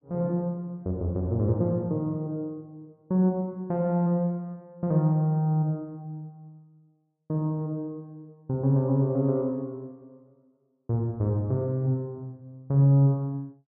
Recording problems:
none

